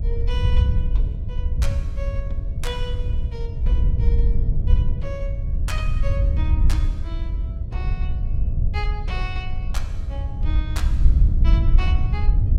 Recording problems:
mains hum; 60 Hz, harmonics up to 660 Hz, SNR 16 dB
wind noise; below 72 Hz, SNR -12 dB

